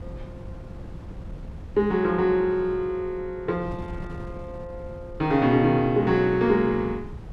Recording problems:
wind on the microphone; below 180 Hz, SNR 17 dB

